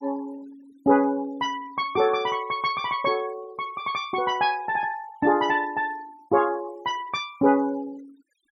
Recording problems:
noise reduction artefacts; signal-to-artefact ratio 24 dB

